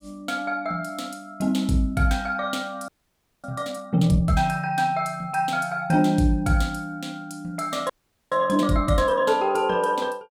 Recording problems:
frozen audio; at 3 s for 0.5 s and at 8 s

